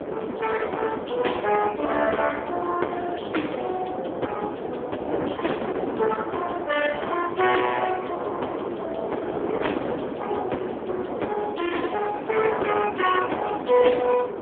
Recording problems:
telephone audio; 300 Hz to 3.4 kHz, AMR-NB
distorted audio; hard clipping, uneven, signal-to-distortion ratio 13 dB
wind on the microphone; below 700 Hz, SNR 6 dB

